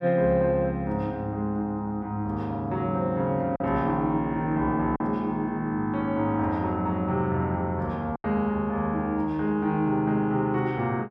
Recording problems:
lost packets; 1.4% of the sound replaced, filled with silence

